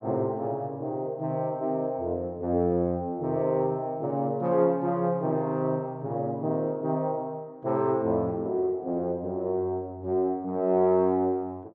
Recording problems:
none

